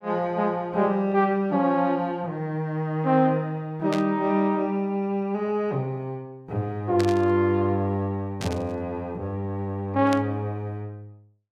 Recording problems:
burst of static; 4 times, first at 4 s; peak -4 dB vs average level

